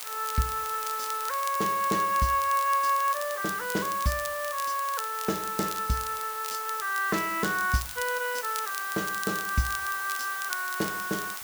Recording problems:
hiss; SNR 8 dB
crackle; vinyl, SNR 12 dB

